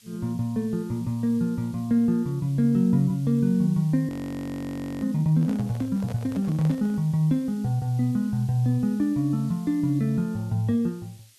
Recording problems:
background hiss; SNR 27 dB
frozen audio; at 4 s for 1 s
microphone handling noise; from 5.5 to 7 s; peak -10 dB vs average level

